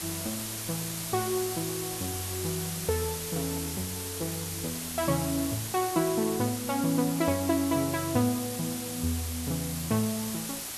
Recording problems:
background hiss; slope 0 dB per octave, SNR 4 dB

